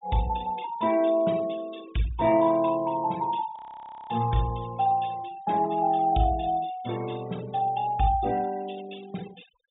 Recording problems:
treble cut off; nothing above 4 kHz
denoising artefacts; signal-to-artefact ratio 19 dB
frozen audio; at 3.5 s for 0.5 s

